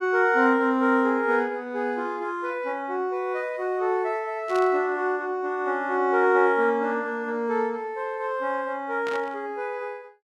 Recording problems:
burst of static; at 4.5 s and at 9 s; peak -8 dB vs average level

